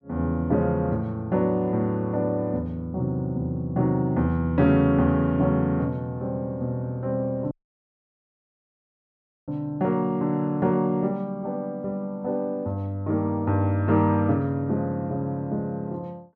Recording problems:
audio cutting out; at 7.5 s for 2 s

